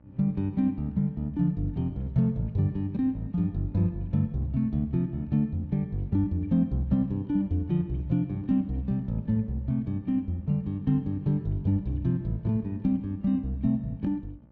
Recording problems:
electrical hum; 60 Hz, harmonics up to 900 Hz, SNR 28 dB

